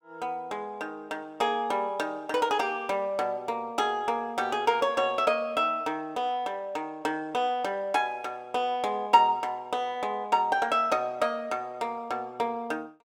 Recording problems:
none

